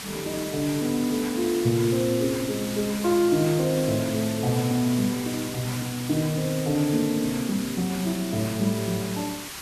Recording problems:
background hiss; slope 0 dB per octave, SNR 9 dB

